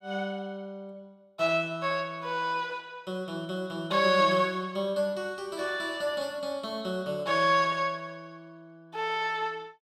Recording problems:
none

